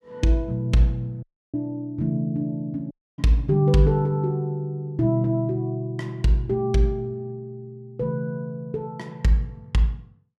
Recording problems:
dropout; at 1 s and at 3 s

